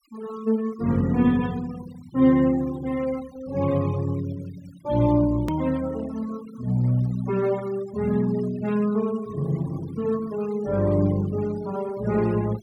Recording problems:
noise reduction artefacts; signal-to-artefact ratio 21 dB
hard cut with a click; at 5.5 s

